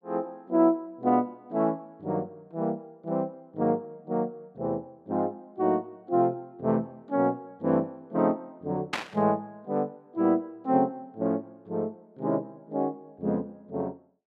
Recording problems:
static burst; at 9 s; peak +4 dB vs average level

